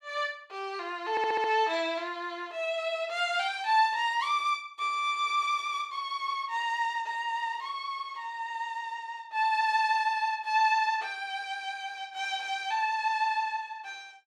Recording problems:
stutter; at 1 s

